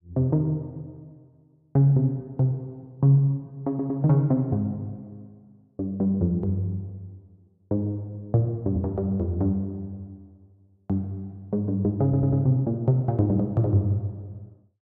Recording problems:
audio stuttering; at 3.5 s and at 12 s

